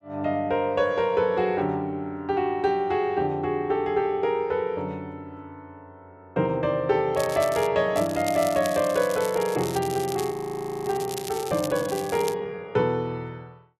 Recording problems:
crackling; at 7 s and from 8 to 12 s; loose cable, SNR 13 dB
audio freezing; at 10 s for 0.5 s

